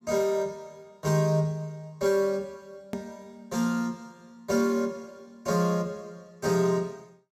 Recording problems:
hard cut with a click; at 3 s

